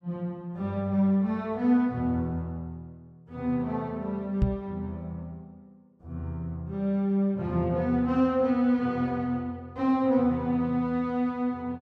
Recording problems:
knock on the microphone; at 4.5 s; peak +6 dB vs average level

